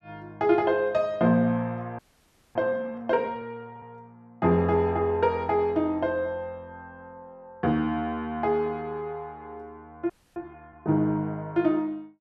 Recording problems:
frozen audio; at 2 s for 0.5 s and at 10 s

